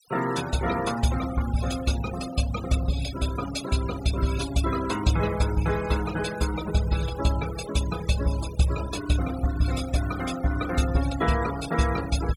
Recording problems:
denoising artefacts; signal-to-artefact ratio 12 dB

